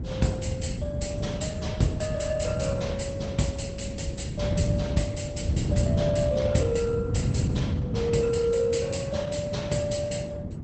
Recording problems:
lossy compression; Opus, log-spectral distance 4 dB, nothing above 8 kHz
wind noise; below 180 Hz, SNR 0 dB

